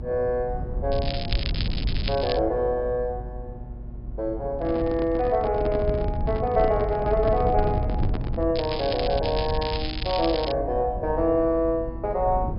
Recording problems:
treble cut off; nothing above 5.5 kHz
hum; 60 Hz, harmonics up to 1.1 kHz, SNR 21 dB
low-frequency rumble; below 120 Hz, SNR 7 dB
crackling; from 1 to 2.5 s and from 8.5 to 11 s; loose cable, SNR 9 dB
handling noise; from 4.5 to 8.5 s; peak -2 dB vs average level

